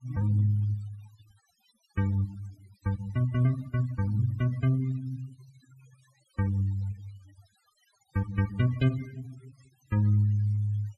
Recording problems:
noise reduction artefacts; signal-to-artefact ratio 24 dB

